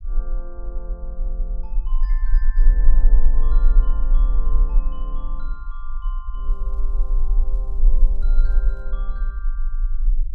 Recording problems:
low-frequency rumble; below 36 Hz, strongest tone 18 Hz, SNR -18 dB
crackle; from 6.5 to 9 s; loose cable, SNR 27 dB

